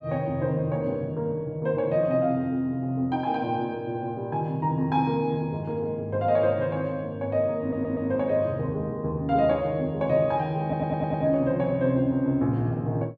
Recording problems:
audio stuttering; at 7.5 s and at 11 s

